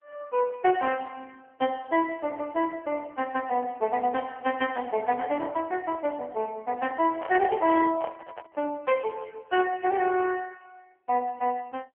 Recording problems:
telephone audio; 260 Hz to 3.3 kHz, AMR-NB
microphone handling noise; from 7 to 8.5 s; peak -5 dB vs average level

